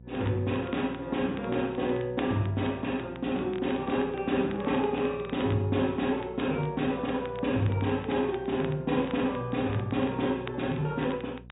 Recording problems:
treble cut off; nothing above 4 kHz
hum; 60 Hz, harmonics up to 540 Hz, SNR 20 dB
crackle; vinyl, SNR 20 dB

